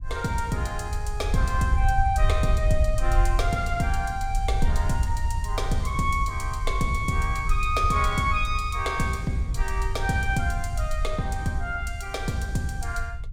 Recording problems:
rumble; below 70 Hz, SNR 2 dB

